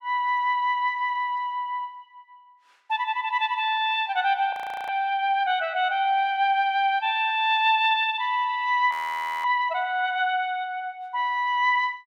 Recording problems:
audio freezing; at 4.5 s and at 9 s for 0.5 s

